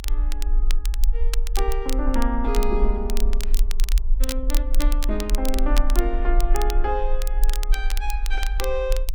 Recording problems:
low-frequency rumble; below 40 Hz, strongest tone 22 Hz, SNR -3 dB
crackling; vinyl, SNR 7 dB

